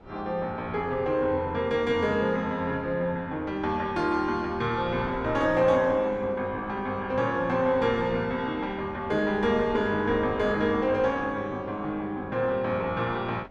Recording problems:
wind on the microphone; below 550 Hz, SNR 19 dB

